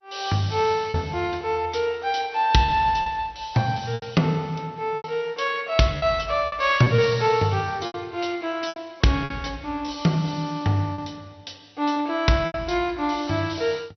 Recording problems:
lossy compression; MP2, log-spectral distance 4 dB, nothing above 6 kHz
packet loss; 6% of the sound replaced, filled with repeated pitch periods

